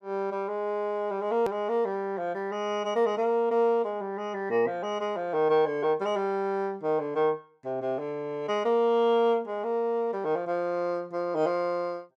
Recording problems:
click at an edit; at 1.5 s

